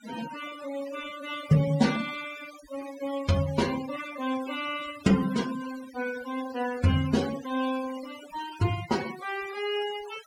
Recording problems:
noise reduction artefacts; signal-to-artefact ratio 13 dB

